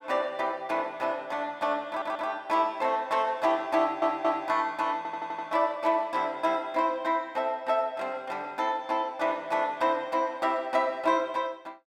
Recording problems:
stutter; at 2 s, at 4 s and at 5 s

